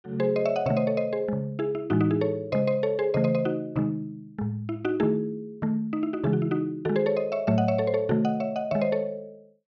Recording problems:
none

